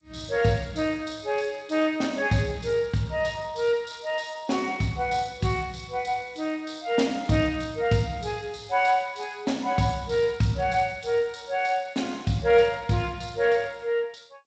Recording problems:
codec artefacts; Speex, then G.722, log-spectral distance 6 dB, nothing above 7.8 kHz

